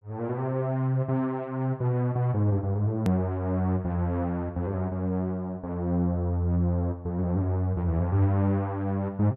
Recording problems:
edit click; at 3 s

